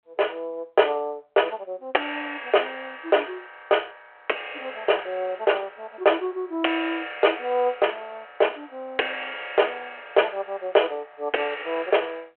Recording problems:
telephone audio; 340 Hz to 3.2 kHz, G.726

